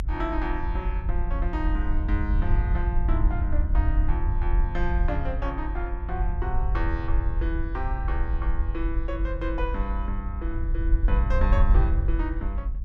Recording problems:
low-frequency rumble; below 60 Hz, SNR -6 dB

